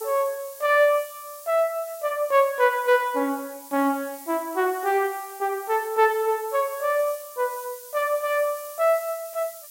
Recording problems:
background hiss; SNR 17 dB

